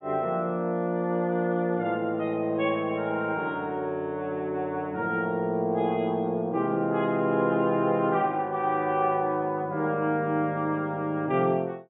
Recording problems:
treble cut off; nothing above 4 kHz

